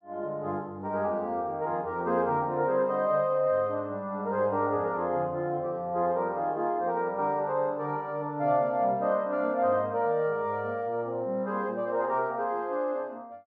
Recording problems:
none

